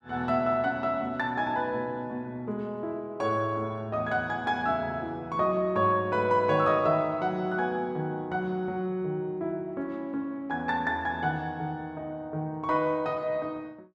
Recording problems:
none

